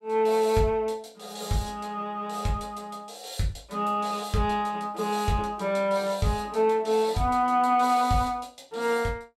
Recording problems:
none

